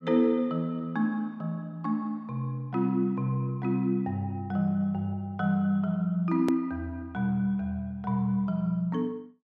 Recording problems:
edit click; at 6.5 s

